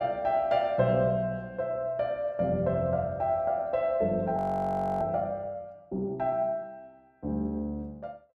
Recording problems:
audio freezing; at 4.5 s for 0.5 s

